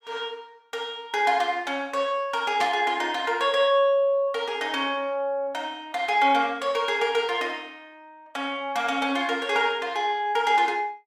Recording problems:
burst of static; at 2.5 s; peak -4 dB vs average level

